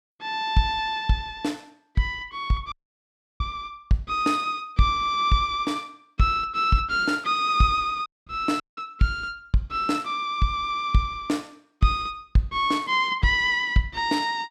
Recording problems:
dropout; at 2.5 s for 0.5 s, at 8 s and at 8.5 s

